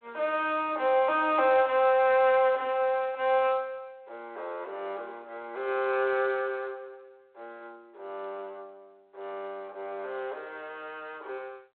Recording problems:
phone line; 340 Hz to 3.7 kHz, G.726

